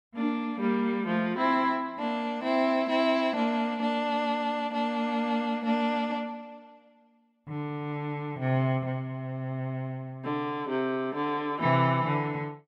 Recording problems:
none

